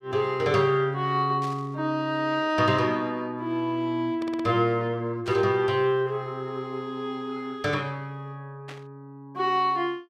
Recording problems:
static burst; at 1.5 s, at 5.5 s and at 8.5 s; peak -12 dB vs average level
audio stuttering; at 4 s

